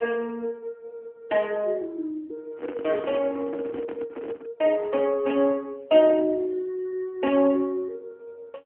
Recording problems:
phone line; 240 Hz to 3.2 kHz, AMR-NB
handling noise; from 2.5 to 4.5 s; peak -6 dB vs average level

